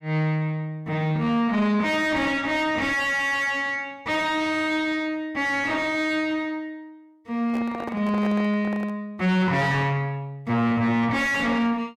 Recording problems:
distorted audio; soft clipping, signal-to-distortion ratio 7 dB
microphone handling noise; from 7.5 to 9 s; peak -6 dB vs average level

